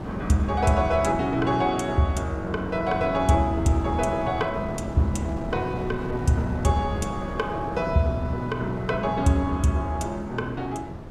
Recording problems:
wind on the microphone; below 440 Hz, SNR 10 dB

